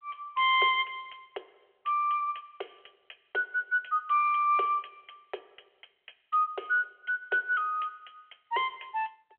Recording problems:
telephone audio; 320 Hz to 3.5 kHz, G.726

